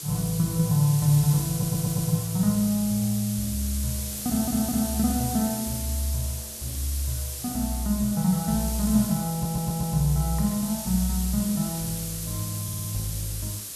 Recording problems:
background hiss; SNR 6 dB
audio stuttering; 4 times, first at 1.5 s

